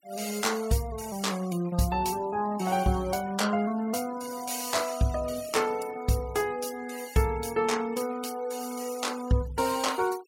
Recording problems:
noise reduction artefacts; signal-to-artefact ratio 17 dB

